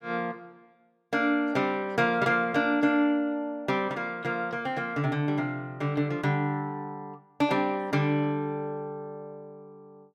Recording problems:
none

